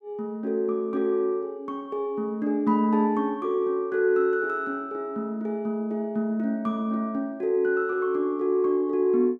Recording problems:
none

